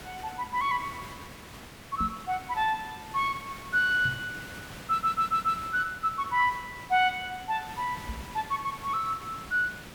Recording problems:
background hiss; slope -3 dB per octave, SNR 15 dB
microphone thump; at 2 s, at 4 s and at 8 s; peak -2 dB vs average level
audio stuttering; at 5 s

